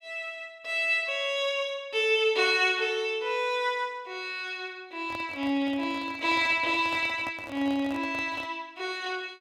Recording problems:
handling noise; from 5 to 8.5 s; peak -9 dB vs average level

